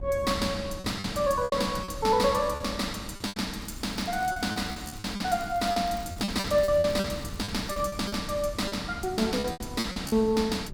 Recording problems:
wind on the microphone; below 170 Hz, SNR 13 dB
packet loss; 12% of the sound replaced, filled with repeated pitch periods
crackling; from 3.5 to 8 s; loose cable, SNR 23 dB

